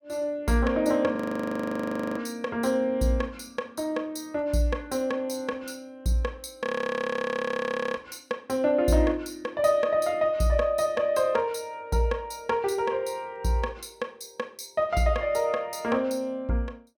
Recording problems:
audio freezing; at 1 s for 1 s and at 6.5 s for 1.5 s

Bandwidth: 17.5 kHz